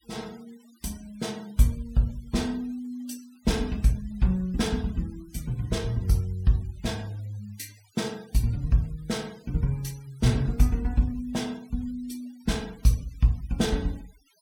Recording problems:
denoising artefacts; signal-to-artefact ratio 24 dB

